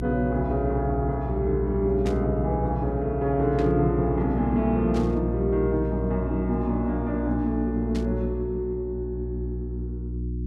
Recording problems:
hum; 60 Hz, harmonics up to 360 Hz, SNR 5 dB
static burst; 4 times, first at 2 s; peak -9 dB vs average level

